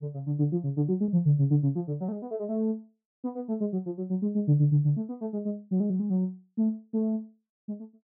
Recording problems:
lost packets; 0.6% of the sound replaced, filled with repeated pitch periods

